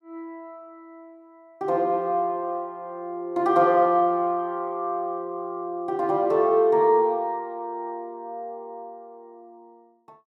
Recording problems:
none

